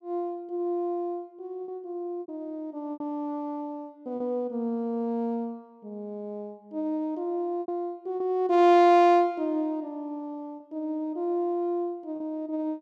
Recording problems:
packet loss; 3% of the sound replaced, filled with repeated pitch periods

